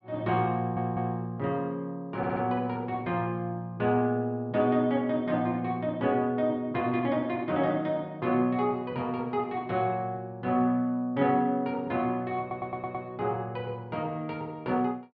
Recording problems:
stutter; at 0.5 s, at 2 s and at 12 s

